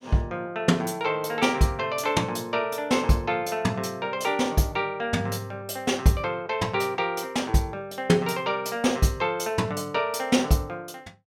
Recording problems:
none

